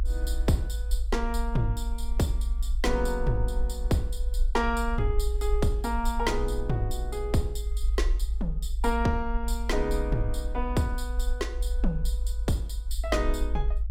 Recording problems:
low-frequency rumble; below 54 Hz, SNR 1 dB

